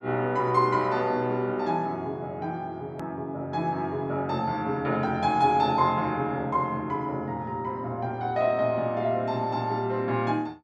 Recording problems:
click at an edit; at 3 s

